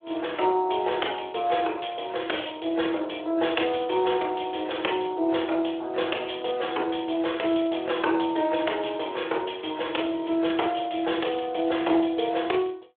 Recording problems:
telephone audio; 300 Hz to 3.6 kHz, Speex

